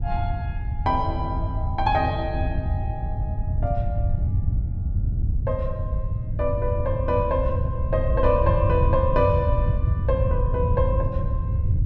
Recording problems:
wind noise; below 110 Hz, SNR -1 dB

